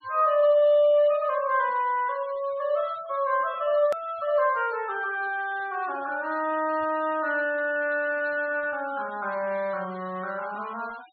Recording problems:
treble missing; nothing above 4.3 kHz
denoising artefacts; signal-to-artefact ratio 23 dB
click at an edit; at 4 s

